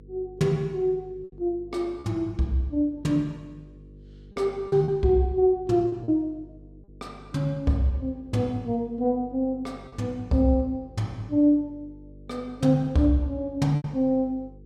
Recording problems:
hum; 50 Hz, harmonics up to 500 Hz, SNR 23 dB
lost packets; 3% of the sound replaced, filled with repeated pitch periods

